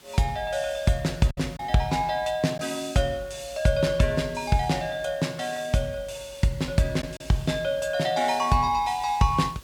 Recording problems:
background hiss; slope -2 dB per octave, SNR 24 dB
lost packets; 1.4% of the sound replaced, filled with silence

